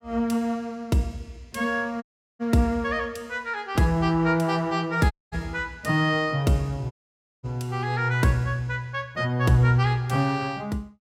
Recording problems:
audio cutting out; at 2 s, at 5 s and at 7 s for 0.5 s

